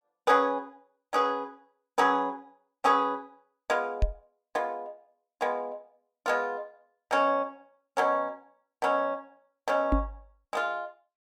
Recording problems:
microphone thump; at 4 s and at 10 s; peak +6 dB vs average level

